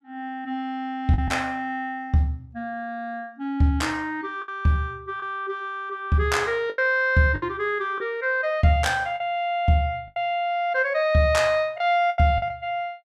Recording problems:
packet loss; 5% of the sound replaced, filled with the last packet

